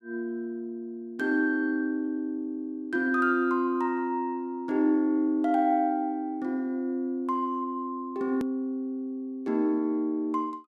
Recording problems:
hard cut with a click; at 8.5 s

